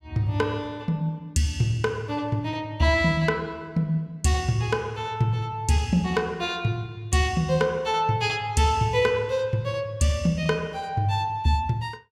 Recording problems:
none

